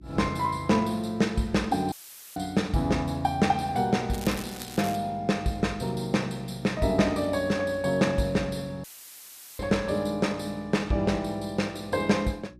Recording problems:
hum; 60 Hz, harmonics up to 360 Hz, SNR 23 dB
dropout; at 2 s and at 9 s for 1 s; filled with static
crackle; at 4 s; loose cable, SNR 14 dB

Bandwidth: 14.5 kHz